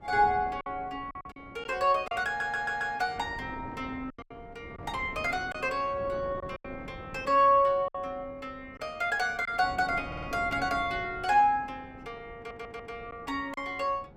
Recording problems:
wind on the microphone; below 490 Hz, SNR 18 dB
lost packets; 5% of the sound replaced, filled with silence
audio stuttering; at 2.5 s, at 10 s and at 12 s

